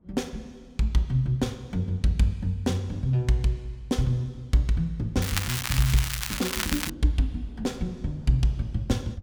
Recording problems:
wind on the microphone; below 220 Hz, SNR 25 dB
crackle; from 5 to 7 s; loose cable, SNR 3 dB

